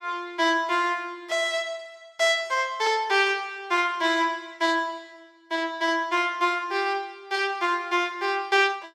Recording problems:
none

